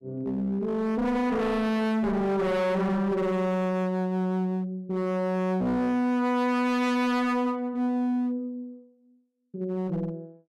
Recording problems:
distortion; hard clipping, uneven, signal-to-distortion ratio 4 dB

